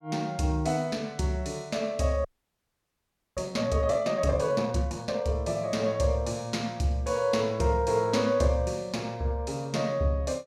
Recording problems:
audio freezing; at 2.5 s for 1 s

